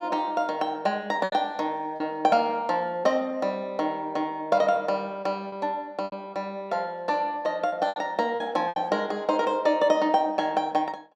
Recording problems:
lost packets; 4% of the sound replaced, filled with repeated pitch periods

